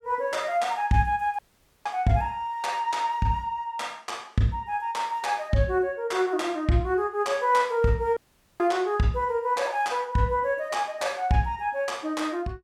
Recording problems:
audio cutting out; at 1.5 s and at 8 s

